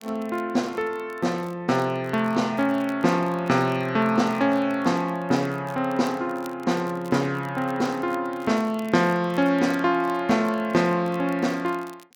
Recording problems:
crackling; vinyl, SNR 27 dB

